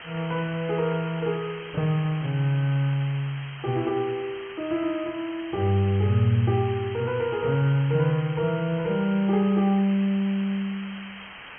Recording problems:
treble cut off; nothing above 3.2 kHz
hiss; SNR 15 dB

